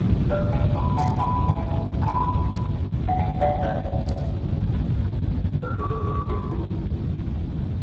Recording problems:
lossy compression; Speex, log-spectral distance 2 dB
hum; 50 Hz, harmonics up to 350 Hz, SNR 19 dB
low-frequency rumble; below 190 Hz, SNR -4 dB
lost packets; 19% of the sound replaced, filled with the last packet
static burst; at 1 s, at 2.5 s and at 4 s; peak -9 dB vs average level

